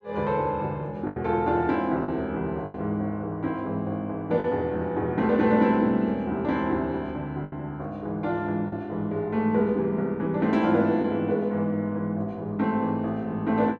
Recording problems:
packet loss; 3% of the sound replaced, filled with the last packet

